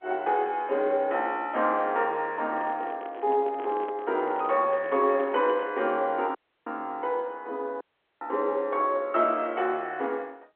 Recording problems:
telephone audio; 280 Hz to 3.4 kHz, G.711
microphone handling noise; from 2.5 to 6 s; peak -9 dB vs average level
audio cutting out; at 6.5 s and at 8 s

